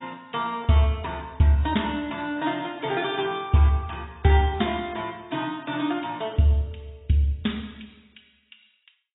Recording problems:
codec artefacts; AAC, log-spectral distance 7 dB, nothing above 3.6 kHz

